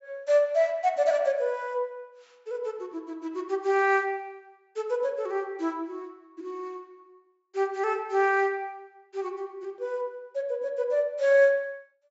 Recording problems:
low-pass filter; nothing above 8 kHz

